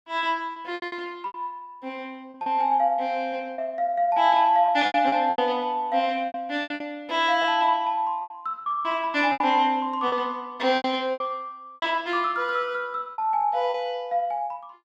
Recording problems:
lost packets; 10% of the sound replaced, filled with repeated pitch periods

